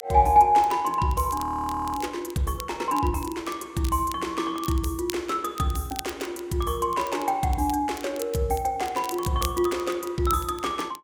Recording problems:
crackle; vinyl, SNR 16 dB
audio freezing; at 1.5 s for 0.5 s

